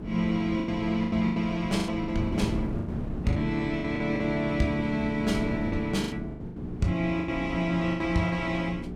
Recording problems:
electrical hum; 60 Hz, harmonics up to 420 Hz, SNR 11 dB
wind on the microphone; below 270 Hz, SNR 9 dB
packet loss; 13% of the sound replaced, filled with the last packet

